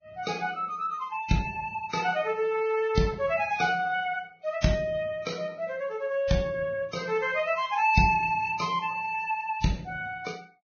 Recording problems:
lossy codec; Vorbis, log-spectral distance 3 dB, nothing above 6.3 kHz

